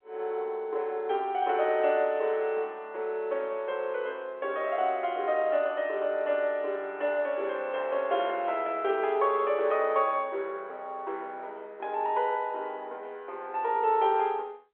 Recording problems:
telephone audio; 320 Hz to 3.4 kHz, G.711

